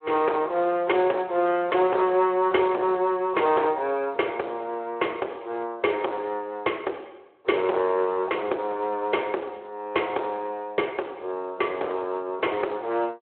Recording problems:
telephone audio; 320 Hz to 3.2 kHz, Speex
distorted audio; hard clipping, signal-to-distortion ratio 12 dB

